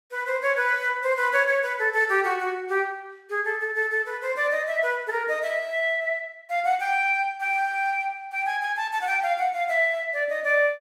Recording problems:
none

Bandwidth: 16 kHz